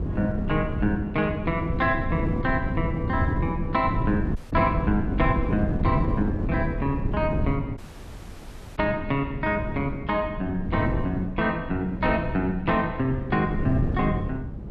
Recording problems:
wind on the microphone; below 220 Hz, SNR 3 dB
audio cutting out; at 4.5 s and at 8 s for 1 s

